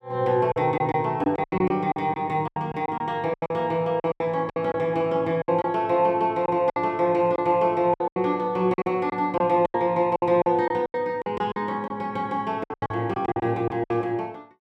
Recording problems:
packet loss; 14% of the sound replaced, filled with silence

